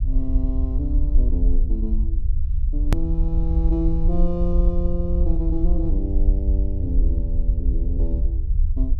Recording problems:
low-frequency rumble; below 58 Hz, SNR -6 dB
click at an edit; at 3 s

